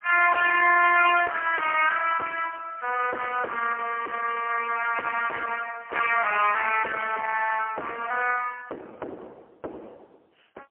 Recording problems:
telephone audio; 370 Hz to 3 kHz, AMR-NB, then MP3
distorted audio; soft clipping, signal-to-distortion ratio 12 dB

